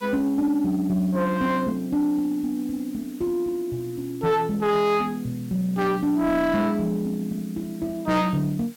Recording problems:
distortion; soft clipping, signal-to-distortion ratio 11 dB
hiss; slope 0 dB per octave, SNR 24 dB

